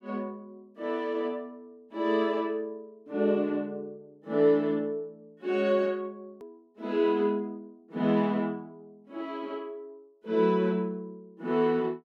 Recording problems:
hard cut with a click; at 6.5 s

